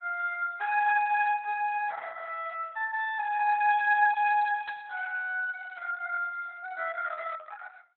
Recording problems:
lossy compression; Opus, log-spectral distance 3 dB, nothing above 3.6 kHz

